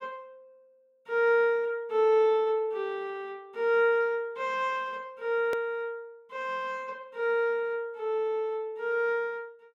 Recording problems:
hard cut with a click; at 5.5 s

